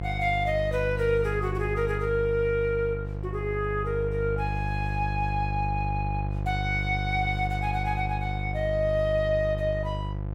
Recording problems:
mains hum; 50 Hz, harmonics up to 850 Hz, SNR 3 dB

